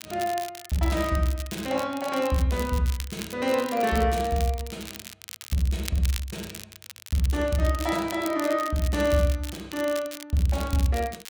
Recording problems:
crackle; vinyl, SNR 13 dB

